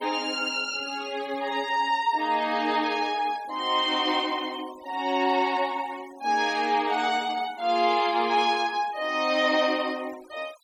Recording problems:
denoising artefacts; signal-to-artefact ratio 20 dB

